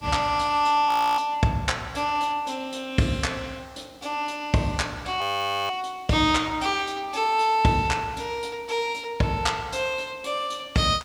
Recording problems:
background hiss; SNR 29 dB
frozen audio; at 1 s and at 5 s

